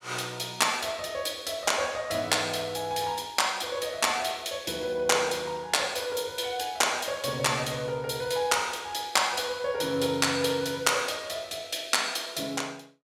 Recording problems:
none

